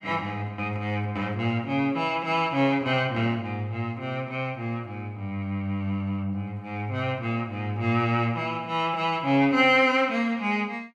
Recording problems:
none

